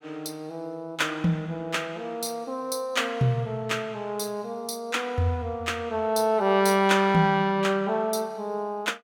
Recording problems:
none

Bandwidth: 17 kHz